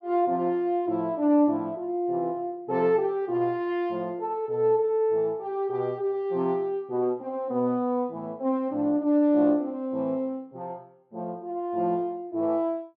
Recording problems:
none

